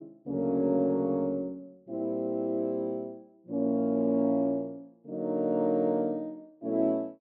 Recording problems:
none

